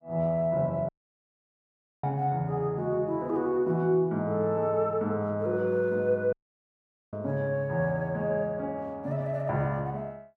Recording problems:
dropout; at 1 s for 1 s and at 6.5 s for 1 s

